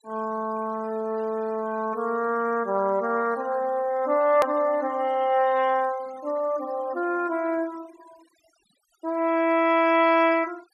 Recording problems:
denoising artefacts; signal-to-artefact ratio 25 dB
edit click; at 4.5 s

